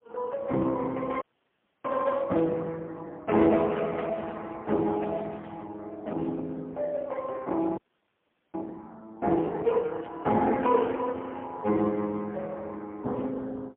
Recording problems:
telephone audio; 150 Hz to 3.3 kHz, AMR-NB, then MP3
frozen audio; at 1 s for 0.5 s and at 8 s for 1 s
burst of static; at 2.5 s, at 5.5 s and at 10 s; peak -16 dB vs average level

